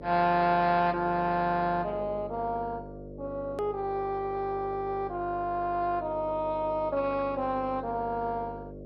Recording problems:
lossy compression; MP2, log-spectral distance 2 dB, nothing above 4.9 kHz
hum; 50 Hz, harmonics up to 600 Hz, SNR 14 dB
click at an edit; at 3.5 s

